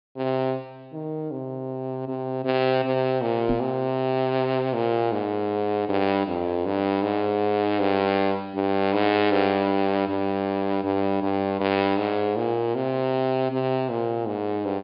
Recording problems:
low-pass filter; nothing above 5.1 kHz
microphone thump; at 3.5 s; peak +2 dB vs average level

